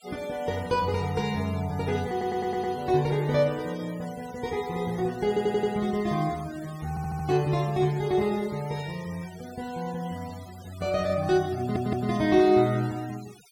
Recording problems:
denoising artefacts; signal-to-artefact ratio 20 dB
audio stuttering; 4 times, first at 2 s

